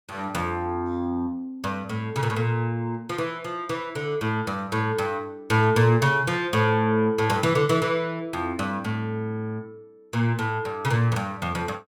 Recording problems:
none

